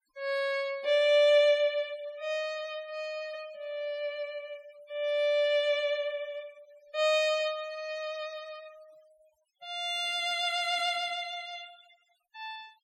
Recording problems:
noise reduction artefacts; signal-to-artefact ratio 27 dB

